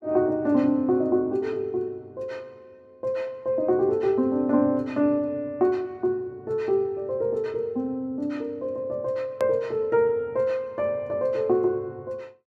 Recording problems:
click at an edit; at 9.5 s

